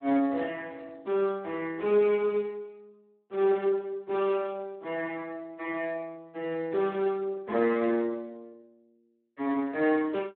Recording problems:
telephone audio; 220 Hz to 3.6 kHz, Speex

